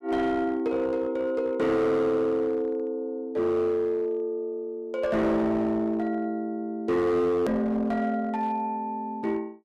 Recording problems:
distortion; hard clipping, uneven, signal-to-distortion ratio 11 dB
hard cut with a click; at 7.5 s

